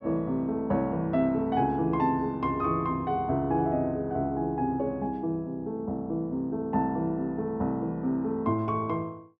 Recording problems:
none

